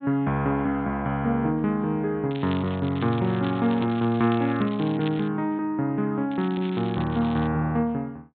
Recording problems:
treble missing; nothing above 4 kHz
crackling; from 2.5 to 5.5 s and from 6.5 to 7.5 s; loose cable, SNR 18 dB

